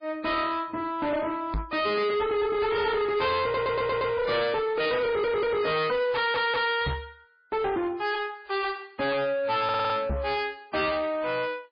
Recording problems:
codec artefacts; MP3, log-spectral distance 3 dB, nothing above 4.4 kHz
distorted audio; soft clipping, signal-to-distortion ratio 7 dB
knock on the microphone; at 1.5 s, at 7 s and at 10 s; peak 0 dB vs average level
stutter; 4 times, first at 3.5 s

